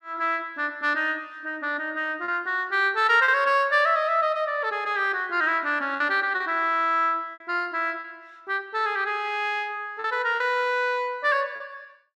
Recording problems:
lost packets; 3% of the sound replaced, filled with repeated pitch periods

